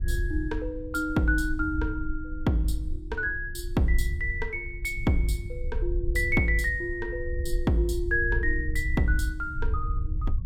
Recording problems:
low-frequency rumble; below 66 Hz, SNR 5 dB

